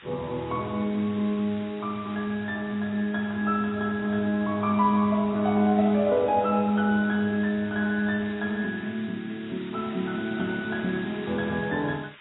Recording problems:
lossy compression; AAC, log-spectral distance 6 dB, nothing above 3.2 kHz
hiss; SNR 20 dB

